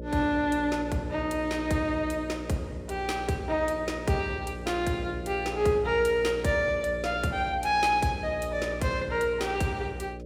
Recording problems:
hum; 60 Hz, harmonics up to 600 Hz, SNR 11 dB

